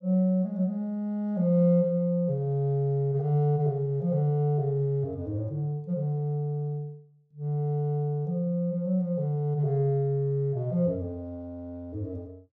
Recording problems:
none

